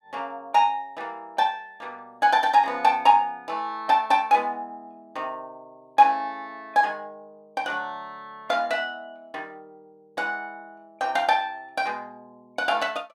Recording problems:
none

